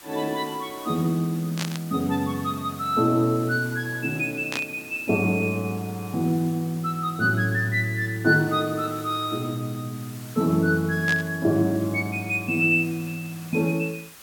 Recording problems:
hiss; SNR 19 dB
burst of static; at 1.5 s, at 4.5 s and at 11 s; peak -1 dB vs average level

